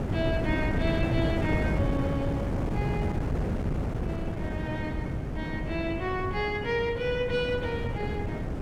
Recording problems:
wind on the microphone; below 310 Hz, SNR -1 dB

